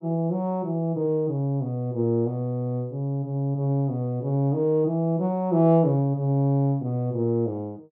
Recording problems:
none

